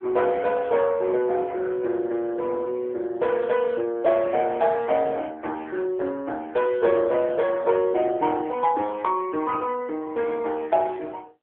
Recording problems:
phone line; 260 Hz to 3.4 kHz, AMR-NB

